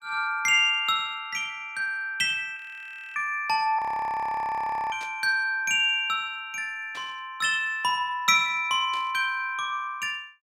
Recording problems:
audio freezing; at 2.5 s for 0.5 s and at 4 s for 1 s
static burst; at 5 s, at 7 s and at 9 s; peak -13 dB vs average level

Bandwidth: 16 kHz